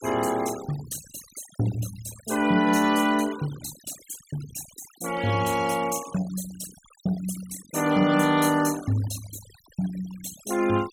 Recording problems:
noise reduction artefacts; signal-to-artefact ratio 15 dB

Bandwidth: 17 kHz